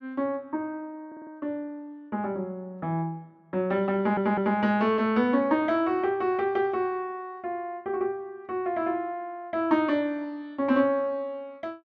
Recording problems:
stutter; at 1 s and at 4 s

